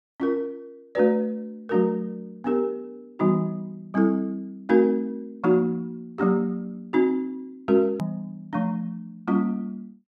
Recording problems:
click at an edit; at 8 s

